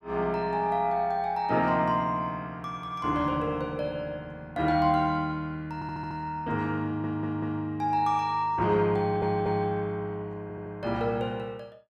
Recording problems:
audio stuttering; 4 times, first at 6 s

